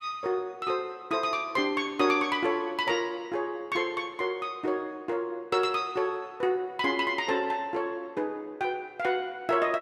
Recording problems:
none

